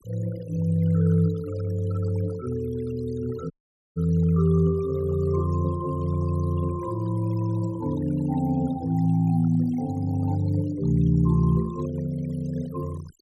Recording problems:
noise reduction artefacts; signal-to-artefact ratio 20 dB
dropout; at 3.5 s

